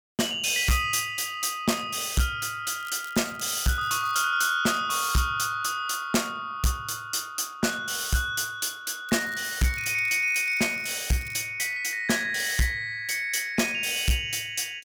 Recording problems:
distorted audio; hard clipping, signal-to-distortion ratio 12 dB
crackle; from 3 to 4 s and from 9 to 11 s; loose cable, SNR 21 dB

